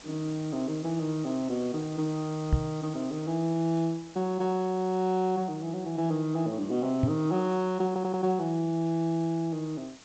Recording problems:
lossy compression; G.722, log-spectral distance 6 dB, nothing above 7.6 kHz
hiss; slope -1 dB per octave, SNR 21 dB
microphone bump; at 2.5 s and at 7 s; peak +8 dB vs average level
audio stuttering; at 8 s

